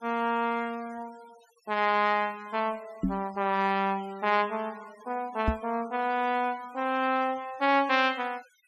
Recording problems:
denoising artefacts; signal-to-artefact ratio 24 dB
knock on the microphone; at 3 s and at 5.5 s; peak +4 dB vs average level

